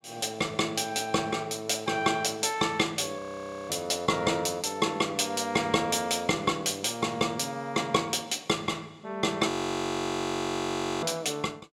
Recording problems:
frozen audio; at 3 s for 0.5 s and at 9.5 s for 1.5 s

